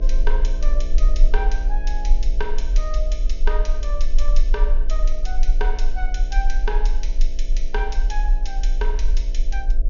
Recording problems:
treble missing; nothing above 6.8 kHz
hum; 60 Hz, harmonics up to 660 Hz, SNR 9 dB
rumble; below 36 Hz, strongest tone 18 Hz, SNR -9 dB

